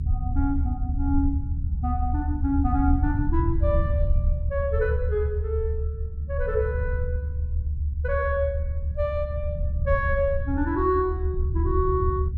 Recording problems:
low-frequency rumble; below 78 Hz, SNR -1 dB

